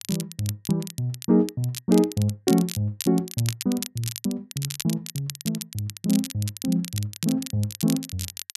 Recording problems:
crackling; vinyl, SNR 9 dB

